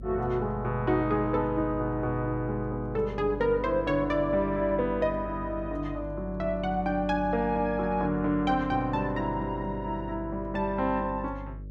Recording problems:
electrical hum; 50 Hz, harmonics up to 550 Hz, SNR 12 dB

